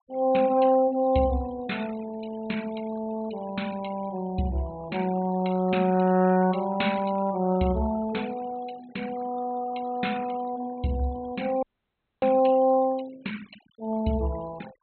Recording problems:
treble missing; nothing above 4.1 kHz
noise reduction artefacts; signal-to-artefact ratio 20 dB
dropout; at 12 s for 0.5 s

